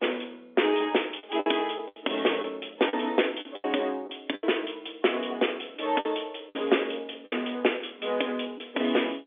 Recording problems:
telephone audio; 260 Hz to 3.6 kHz, G.711
lost packets; 8% of the sound replaced, filled with the last packet

